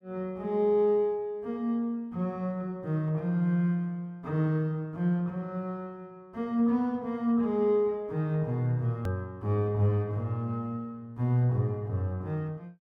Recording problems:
click at an edit; at 9 s

